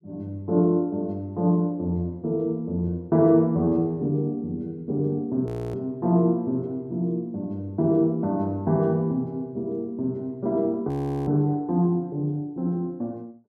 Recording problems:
audio freezing; at 5.5 s and at 11 s

